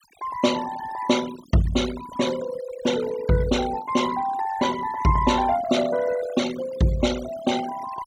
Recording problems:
denoising artefacts; signal-to-artefact ratio 14 dB

